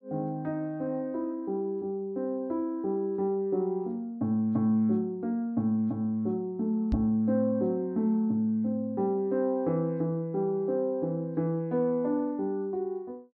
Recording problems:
microphone thump; at 7 s; peak +3 dB vs average level

